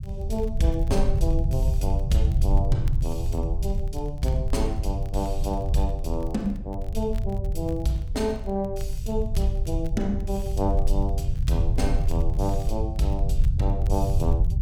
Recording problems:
rumble; below 80 Hz, SNR -2 dB
crackle; vinyl, SNR 27 dB

